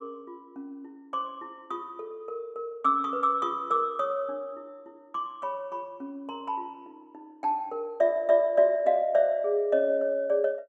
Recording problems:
none

